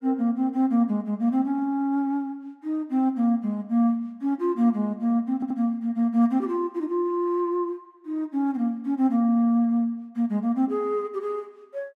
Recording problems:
audio stuttering; at 5.5 s

